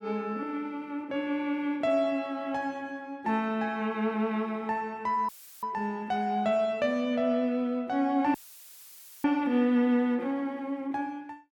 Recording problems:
audio cutting out; at 5.5 s and at 8.5 s for 1 s; filled with static

